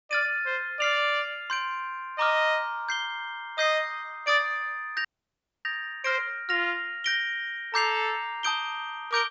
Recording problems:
treble missing; nothing above 8 kHz
audio freezing; at 5 s for 0.5 s

